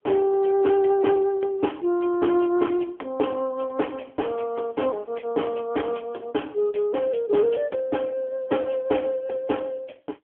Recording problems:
telephone audio; 260 Hz to 3.3 kHz, AMR-NB

